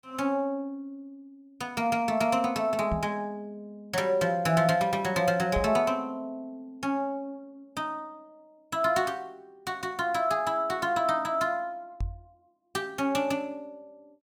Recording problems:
microphone bump; at 3 s, at 5.5 s and at 12 s; peak 0 dB vs average level

